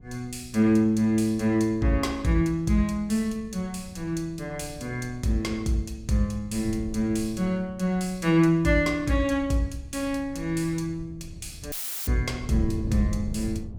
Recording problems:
wind on the microphone; below 120 Hz, SNR 15 dB
dropout; at 12 s; filled with static

